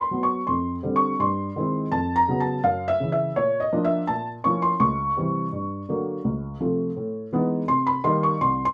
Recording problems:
none

